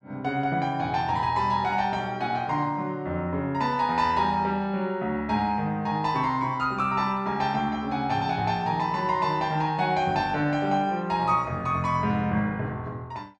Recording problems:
none

